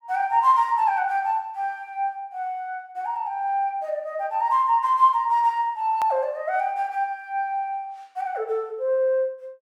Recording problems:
edit click; at 6 s

